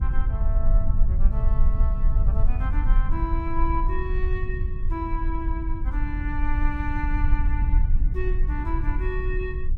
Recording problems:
rumble; below 52 Hz, SNR -8 dB

